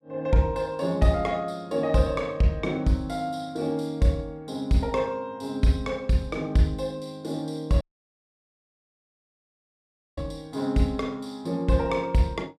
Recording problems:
dropout; at 8 s for 2.5 s

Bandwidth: 15 kHz